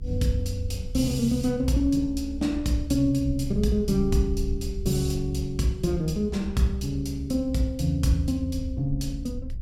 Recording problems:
low-frequency rumble; below 68 Hz, SNR 10 dB

